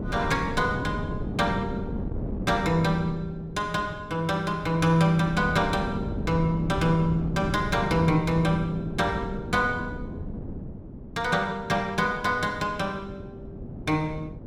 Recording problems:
wind on the microphone; below 270 Hz, SNR 8 dB

